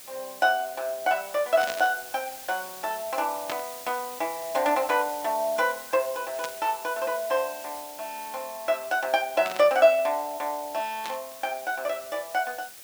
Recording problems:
hiss; slope +1 dB per octave, SNR 14 dB
burst of static; 5 times, first at 1.5 s; peak -3 dB vs average level

